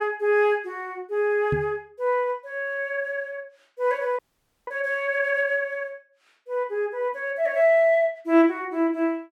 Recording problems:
microphone thump; at 1.5 s; peak 0 dB vs average level
audio freezing; at 4 s

